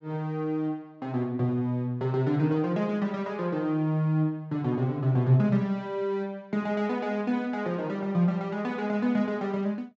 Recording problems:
treble missing; nothing above 7.7 kHz

